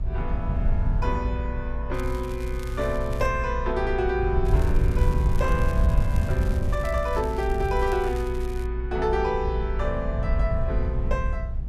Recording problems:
rumble; below 80 Hz, SNR -1 dB
crackling; from 2 to 3.5 s and from 4.5 to 8.5 s; loose cable, SNR 19 dB

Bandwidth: 13.5 kHz